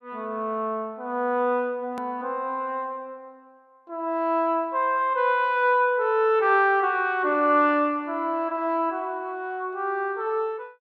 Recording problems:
edit click; at 2 s

